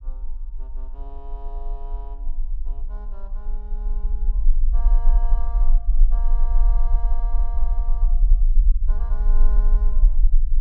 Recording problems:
rumble; below 36 Hz, strongest tone 22 Hz, SNR -20 dB

